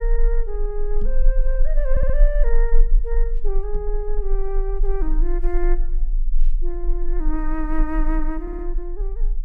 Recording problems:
low-frequency rumble; below 32 Hz, strongest tone 20 Hz, SNR -5 dB
microphone thump; at 1 s and at 4 s; peak 0 dB vs average level
stutter; at 2 s and at 8.5 s

